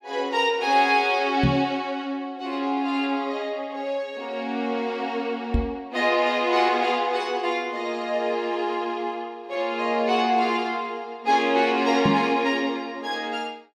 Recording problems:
knock on the microphone; at 1.5 s, at 5.5 s and at 12 s; peak +6 dB vs average level

